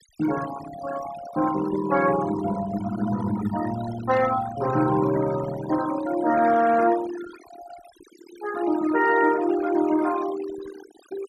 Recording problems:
denoising artefacts; signal-to-artefact ratio 12 dB

